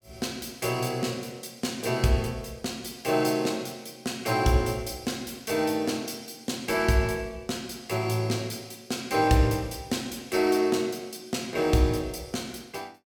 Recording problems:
none

